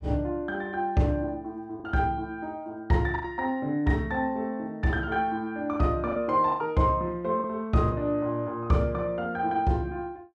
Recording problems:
lost packets; 3% of the sound replaced, filled with the last packet

